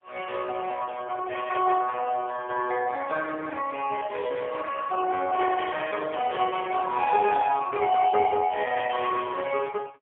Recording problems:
telephone audio; 320 Hz to 2.5 kHz, AMR-NB, then MP3

